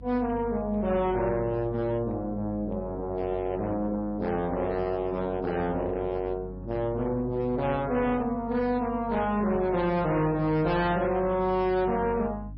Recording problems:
codec artefacts; AAC, then MP3, log-spectral distance 2 dB, nothing above 5.2 kHz
distorted audio; hard clipping, uneven, signal-to-distortion ratio 12 dB
hum; 50 Hz, harmonics up to 300 Hz, SNR 15 dB

